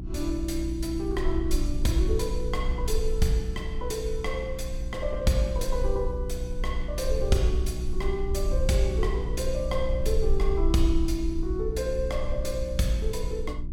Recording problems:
hum; 60 Hz, harmonics up to 360 Hz, SNR 6 dB
low-frequency rumble; below 48 Hz, strongest tone 20 Hz, SNR 4 dB

